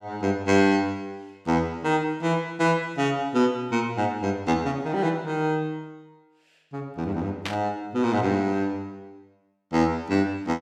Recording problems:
burst of static; at 7.5 s; peak -1 dB vs average level

